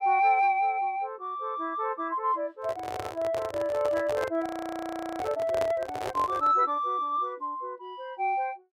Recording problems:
microphone handling noise; from 2.5 to 6.5 s; peak -1 dB vs average level
frozen audio; at 4.5 s for 0.5 s

